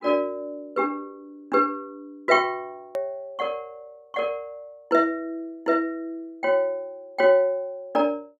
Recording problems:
hard cut with a click; at 3 s

